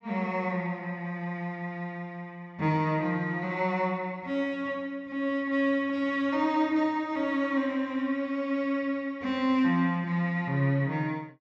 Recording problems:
low-pass filter; nothing above 7.7 kHz

